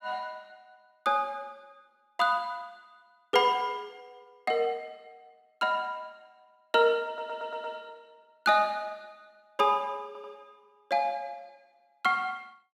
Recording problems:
audio stuttering; at 7 s and at 10 s

